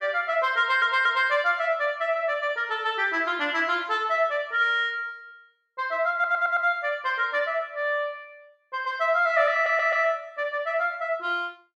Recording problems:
stutter; at 0.5 s, at 6 s and at 9.5 s

